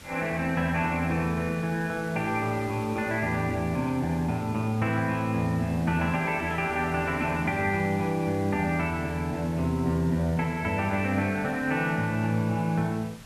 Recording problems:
hiss; slope -2 dB per octave, SNR 19 dB

